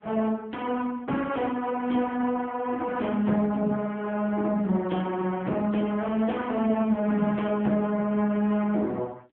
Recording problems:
phone line; 150 Hz to 3.5 kHz, AMR-NB

